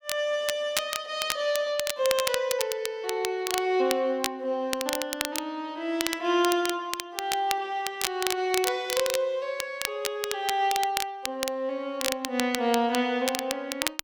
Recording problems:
crackle; vinyl, SNR 4 dB

